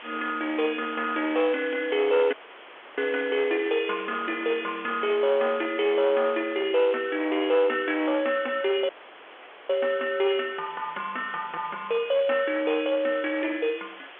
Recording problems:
telephone audio; 340 Hz to 3.4 kHz, G.711
distorted audio; hard clipping, uneven, signal-to-distortion ratio 12 dB
hiss; SNR 17 dB
dropout; at 2.5 s for 0.5 s and at 9 s for 1 s

